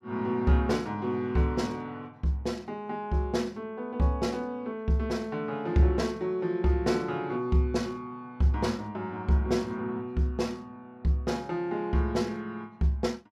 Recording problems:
none

